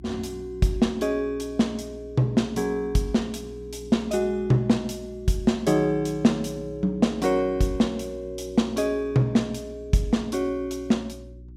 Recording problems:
mains hum; 60 Hz, harmonics up to 360 Hz, SNR 20 dB

